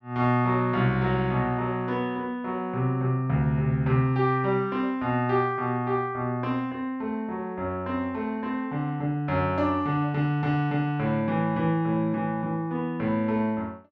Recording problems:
none

